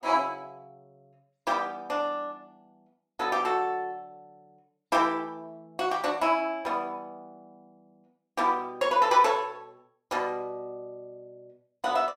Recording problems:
none

